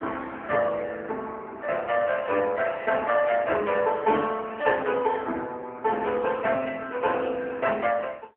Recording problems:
phone line; 280 Hz to 2.6 kHz, AMR-NB

